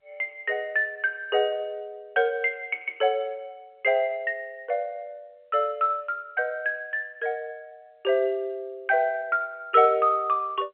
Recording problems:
phone line; 280 Hz to 3.2 kHz, G.711

